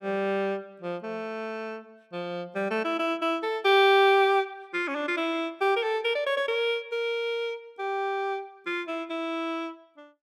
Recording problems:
none

